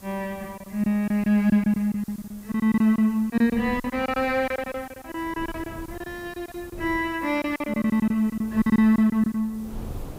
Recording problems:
background hiss; SNR 26 dB
wind noise; below 270 Hz, SNR 21 dB
packet loss; 13% of the sound replaced, filled with silence

